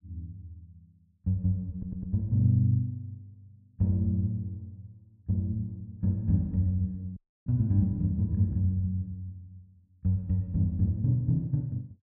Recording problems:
audio stuttering; at 1.5 s
dropout; at 7 s

